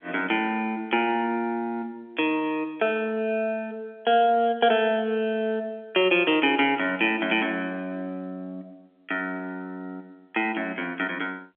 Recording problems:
phone line; 280 Hz to 3.3 kHz, G.711

